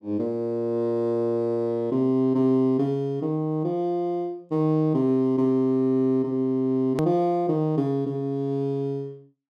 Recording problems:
click at an edit; at 7 s

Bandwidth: 12.5 kHz